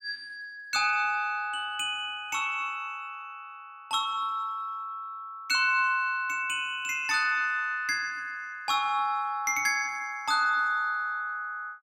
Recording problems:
none

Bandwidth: 18 kHz